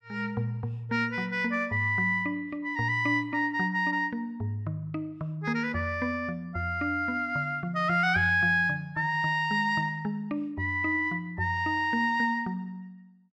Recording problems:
none

